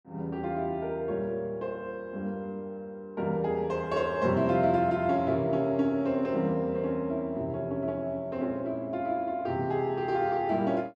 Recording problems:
none

